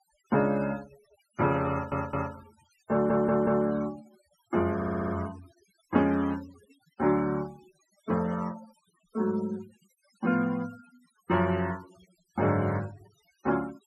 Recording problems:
noise reduction artefacts; signal-to-artefact ratio 21 dB
audio stuttering; at 1.5 s, at 3 s and at 5 s

